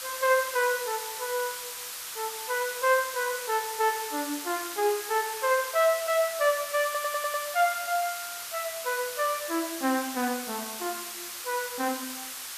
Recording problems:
hiss; SNR 7 dB
stutter; at 7 s

